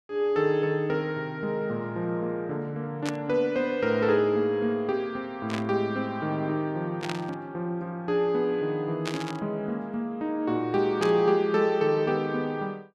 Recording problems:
burst of static; 5 times, first at 3 s; peak -2 dB vs average level

